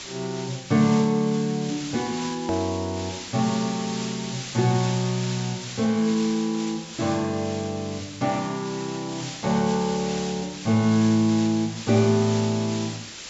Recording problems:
treble missing; nothing above 8 kHz
background hiss; slope +1 dB per octave, SNR 11 dB
edit click; at 2.5 s

